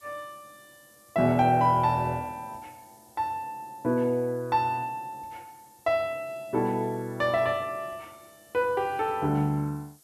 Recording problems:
hiss; SNR 28 dB

